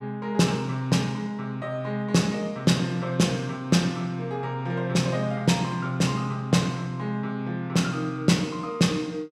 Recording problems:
none

